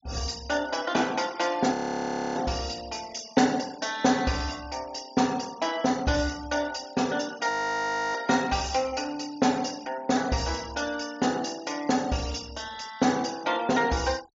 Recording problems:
treble cut off; nothing above 7.3 kHz
denoising artefacts; signal-to-artefact ratio 20 dB
frozen audio; at 1.5 s for 0.5 s and at 7.5 s for 0.5 s

